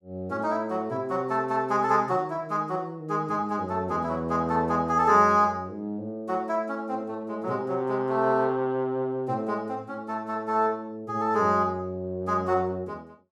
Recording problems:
none

